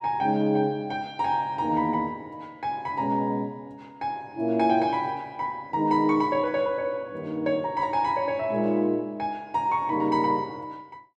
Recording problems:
none

